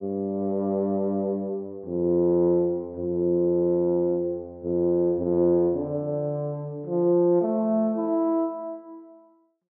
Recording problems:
none

